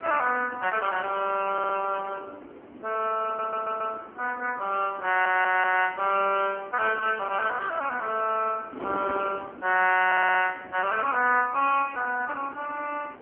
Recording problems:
phone line; 260 Hz to 3.1 kHz, AMR-NB
wind on the microphone; below 610 Hz, SNR 18 dB
audio stuttering; 4 times, first at 1.5 s

